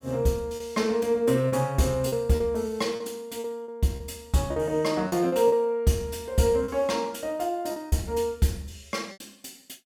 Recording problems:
packet loss; 7% of the sound replaced, filled with repeated pitch periods

